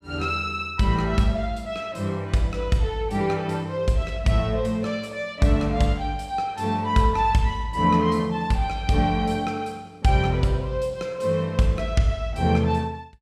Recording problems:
none

